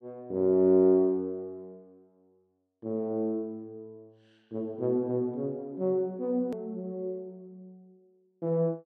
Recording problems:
edit click; at 6.5 s

